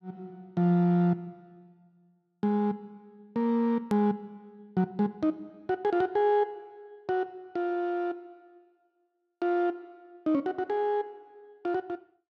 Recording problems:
edit click; at 4 s

